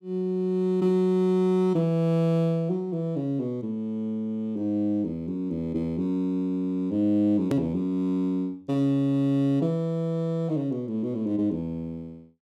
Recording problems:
edit click; at 7.5 s

